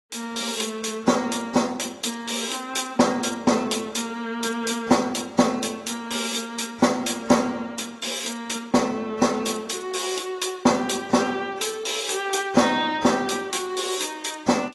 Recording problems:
lossy codec; AAC, log-spectral distance 5 dB, nothing above 11.6 kHz

